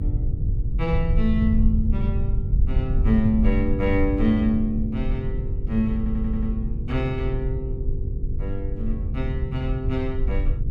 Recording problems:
electrical hum; 50 Hz, harmonics up to 500 Hz, SNR 14 dB
low-frequency rumble; below 84 Hz, SNR 0 dB
audio stuttering; at 6 s

